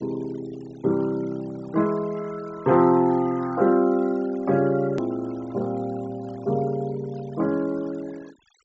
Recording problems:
low-pass filter; nothing above 7.8 kHz
noise reduction artefacts; signal-to-artefact ratio 23 dB
click at an edit; at 5 s

